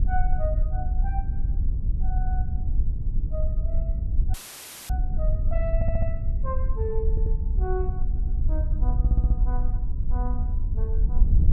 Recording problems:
wind on the microphone; below 62 Hz, SNR -10 dB
audio cutting out; at 4.5 s for 0.5 s; filled with static
stutter; 4 times, first at 6 s

